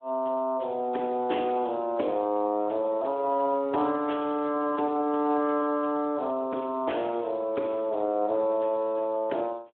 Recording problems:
phone line; 220 Hz to 3.4 kHz, Speex

